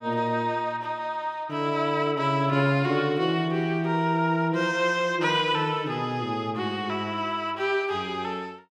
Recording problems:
none

